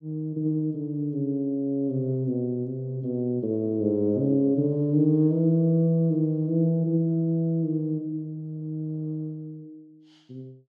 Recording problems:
none

